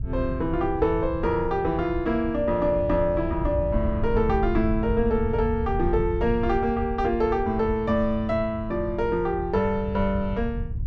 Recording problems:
wind noise; below 92 Hz, SNR 8 dB

